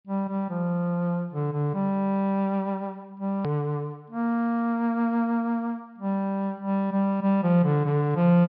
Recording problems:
low-pass filter; nothing above 5.2 kHz
click at an edit; at 3.5 s

